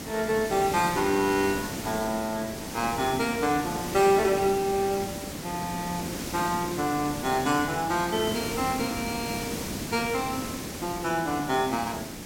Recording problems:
background hiss; SNR 7 dB

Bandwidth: 16.5 kHz